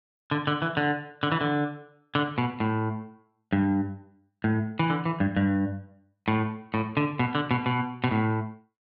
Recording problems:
none

